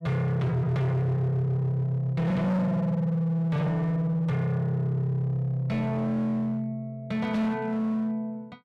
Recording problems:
distortion; hard clipping, signal-to-distortion ratio 8 dB

